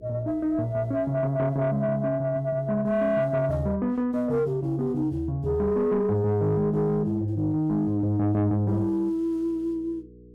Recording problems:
distorted audio; soft clipping, signal-to-distortion ratio 11 dB
hum; 60 Hz, harmonics up to 480 Hz, SNR 25 dB

